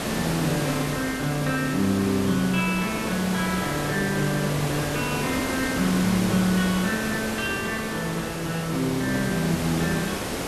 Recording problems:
background hiss; slope -5 dB per octave, SNR 4 dB

